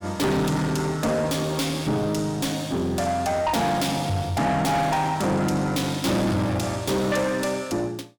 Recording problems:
distorted audio; soft clipping, signal-to-distortion ratio 6 dB

